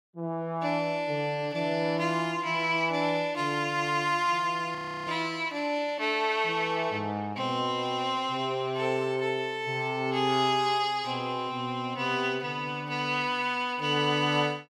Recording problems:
frozen audio; at 5 s

